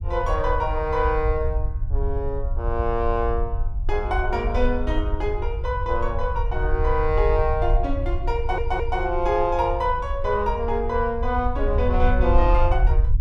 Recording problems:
low-frequency rumble; below 64 Hz, SNR 2 dB
audio stuttering; at 8.5 s

